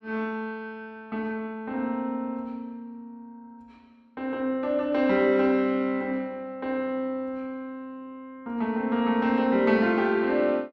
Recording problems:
none

